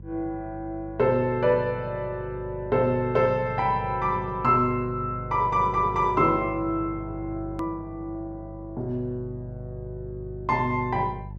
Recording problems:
mains hum; 50 Hz, harmonics up to 400 Hz, SNR 14 dB
edit click; at 7.5 s

